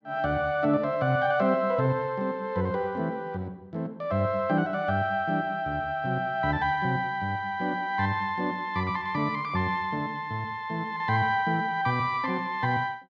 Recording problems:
none

